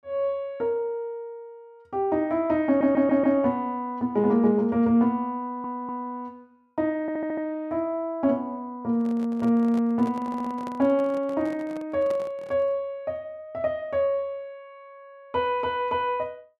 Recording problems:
stutter; 4 times, first at 2.5 s
microphone handling noise; from 9 to 13 s; peak -9 dB vs average level

